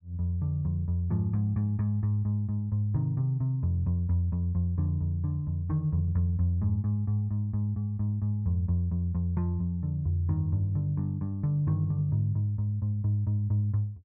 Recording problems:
none

